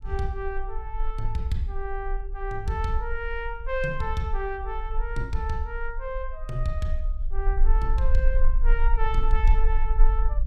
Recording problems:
rumble; below 36 Hz, strongest tone 24 Hz, SNR -2 dB

